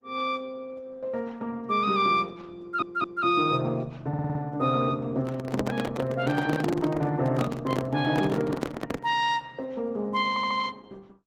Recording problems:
codec artefacts; Opus, log-spectral distance 3 dB
audio stuttering; at 2.5 s, at 4 s and at 10 s
handling noise; from 5 to 9 s; peak +3 dB vs average level

